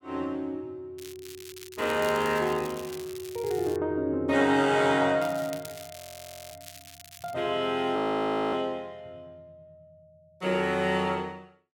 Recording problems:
crackle; from 1 to 4 s and from 5 to 7.5 s; loose cable, SNR 17 dB
audio freezing; at 6 s for 0.5 s and at 8 s for 0.5 s

